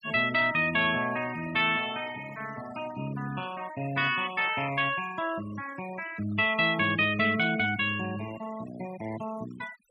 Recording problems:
denoising artefacts; signal-to-artefact ratio 15 dB

